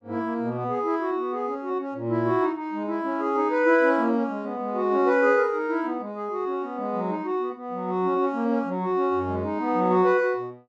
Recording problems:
none

